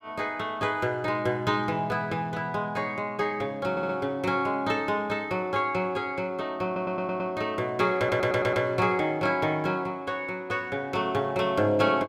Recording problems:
audio stuttering; at 3.5 s, at 6.5 s and at 8 s

